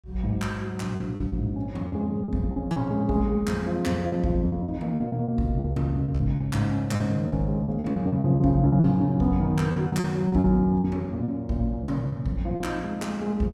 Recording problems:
lost packets; 11% of the sound replaced, filled with repeated pitch periods

